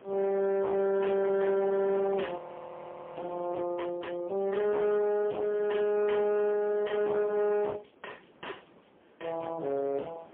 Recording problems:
phone line; 260 Hz to 2.9 kHz, AMR-NB, then MP3
distortion; hard clipping, uneven, signal-to-distortion ratio 11 dB
wind noise; below 1 kHz, SNR 24 dB
audio freezing; at 2.5 s for 1 s

